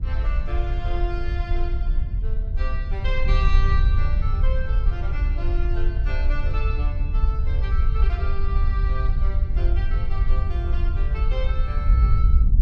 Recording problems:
wind noise; below 62 Hz, SNR -11 dB

